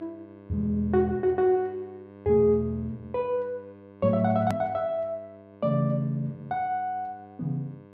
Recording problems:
mains hum; 50 Hz, harmonics up to 2.2 kHz, SNR 21 dB
hard cut with a click; at 4.5 s

